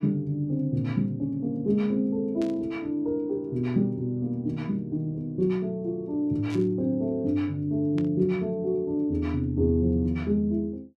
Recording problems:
static burst; at 2.5 s, at 6.5 s and at 8 s; peak -12 dB vs average level

